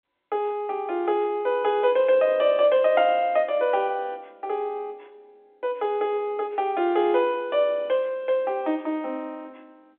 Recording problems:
telephone audio; 260 Hz to 3.6 kHz, G.711

